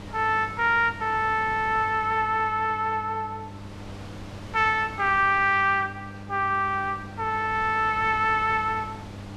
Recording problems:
hum; 50 Hz, harmonics up to 1.2 kHz, SNR 18 dB
wind on the microphone; below 1.3 kHz, SNR 20 dB

